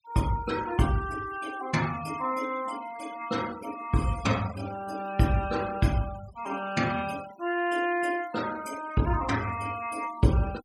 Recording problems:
noise reduction artefacts; signal-to-artefact ratio 16 dB

